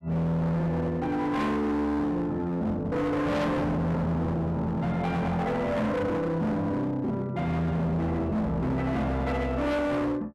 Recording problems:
distorted audio; hard clipping, signal-to-distortion ratio 7 dB

